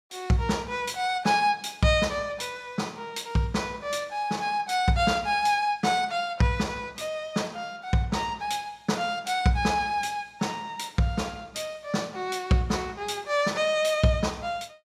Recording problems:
none

